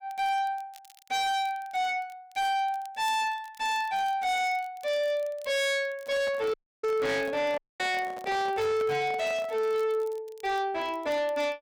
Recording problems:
distorted audio; soft clipping, signal-to-distortion ratio 7 dB
crackling; vinyl, SNR 27 dB
microphone handling noise; from 6 to 9.5 s; peak -8 dB vs average level
dropout; at 6.5 s and at 7.5 s

